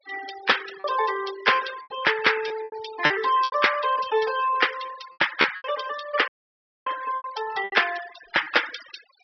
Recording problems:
low-pass filter; nothing above 5.5 kHz
noise reduction artefacts; signal-to-artefact ratio 12 dB
packet loss; 8% of the sound replaced, filled with repeated pitch periods
dropout; at 6.5 s for 0.5 s

